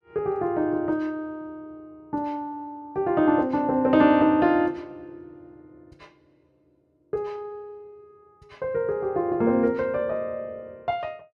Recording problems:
none

